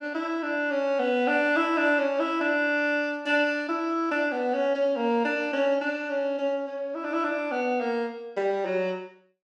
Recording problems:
none

